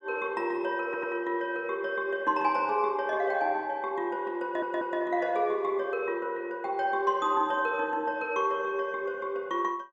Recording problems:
stutter; at 1 s and at 4.5 s

